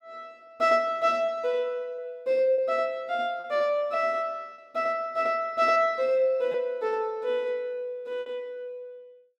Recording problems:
lost packets; 3% of the sound replaced, filled with repeated pitch periods

